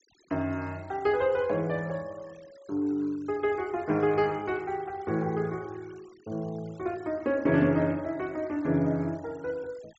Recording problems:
low-pass filter; nothing above 7.7 kHz
denoising artefacts; signal-to-artefact ratio 26 dB

